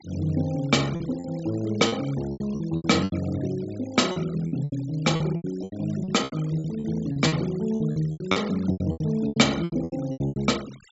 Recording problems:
treble cut off; nothing above 8 kHz
denoising artefacts; signal-to-artefact ratio 19 dB
lost packets; 17% of the sound replaced, filled with repeated pitch periods

